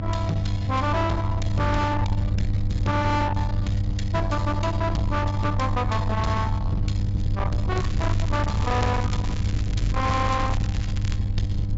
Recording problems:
treble missing; nothing above 8 kHz
distorted audio; soft clipping, signal-to-distortion ratio 8 dB
hum; 50 Hz, harmonics up to 500 Hz, SNR 2 dB
wind on the microphone; below 170 Hz, SNR 2 dB
crackling; from 8 to 11 s; loose cable, SNR 15 dB

